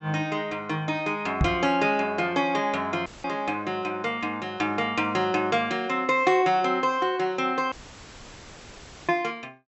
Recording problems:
low-pass filter; nothing above 7.9 kHz
knock on the microphone; at 1.5 s; peak +5 dB vs average level
audio cutting out; at 3 s and at 7.5 s for 1.5 s; filled with static

